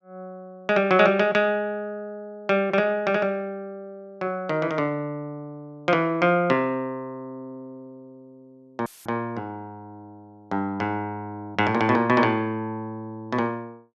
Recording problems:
dropout; at 9 s; filled with static

